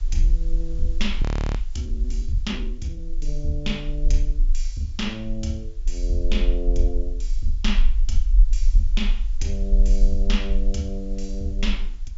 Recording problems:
treble cut off; nothing above 7.3 kHz
background hiss; slope 0 dB per octave, SNR 27 dB
rumble; below 40 Hz, SNR -5 dB
audio freezing; at 1 s

